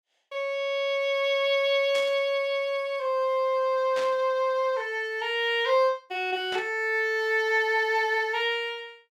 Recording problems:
burst of static; at 2 s, at 4 s and at 6.5 s; peak -7 dB vs average level

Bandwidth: 17.5 kHz